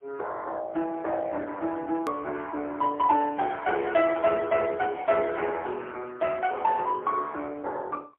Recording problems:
telephone audio; 300 Hz to 3 kHz, AMR-NB, then MP3
click at an edit; at 2 s

